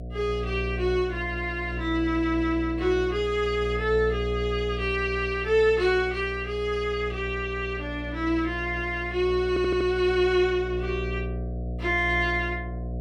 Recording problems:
electrical hum; 60 Hz, harmonics up to 720 Hz, SNR 8 dB
stutter; at 9.5 s

